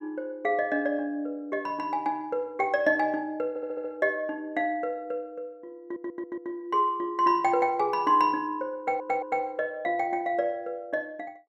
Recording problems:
audio stuttering; at 3.5 s, at 6 s and at 9 s

